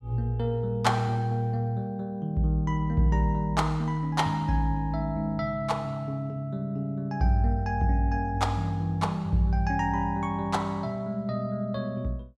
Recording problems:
none

